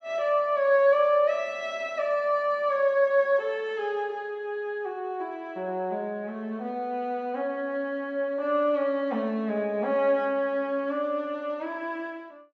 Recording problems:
none

